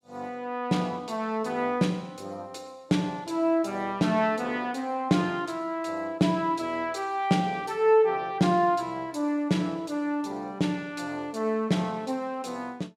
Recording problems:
none

